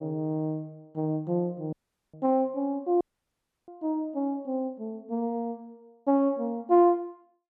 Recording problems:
dropout; at 1.5 s and at 3 s for 0.5 s

